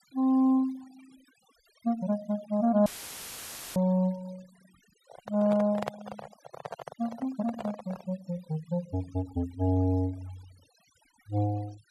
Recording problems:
denoising artefacts; signal-to-artefact ratio 23 dB
audio cutting out; at 3 s for 1 s; filled with static
handling noise; from 5 to 8 s; peak 0 dB vs average level

